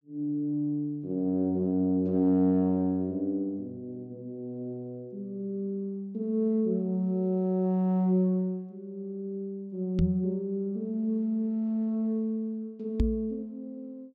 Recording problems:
microphone bump; at 10 s and at 13 s; peak +7 dB vs average level

